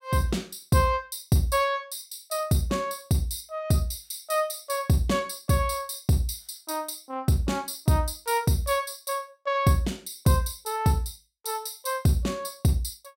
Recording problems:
none

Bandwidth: 16 kHz